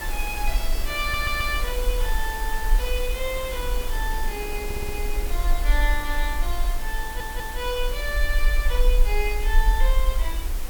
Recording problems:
hiss; slope -3 dB per octave, SNR 6 dB
rumble; below 44 Hz, SNR -1 dB
wind on the microphone; below 510 Hz, SNR 16 dB
stutter; at 1 s, at 4.5 s and at 7 s

